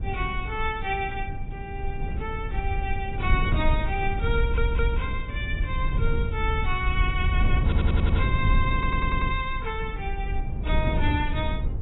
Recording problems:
lossy codec; AAC, log-spectral distance 2 dB, nothing above 3.7 kHz
rumble; below 98 Hz, SNR -1 dB
wind noise; below 74 Hz, SNR 3 dB
stutter; at 4.5 s, at 7.5 s and at 8.5 s

